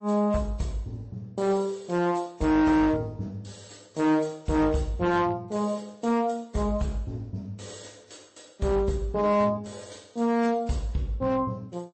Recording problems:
codec artefacts; MP3, then AAC, log-spectral distance 4 dB, nothing above 8.2 kHz
distortion; hard clipping, signal-to-distortion ratio 10 dB

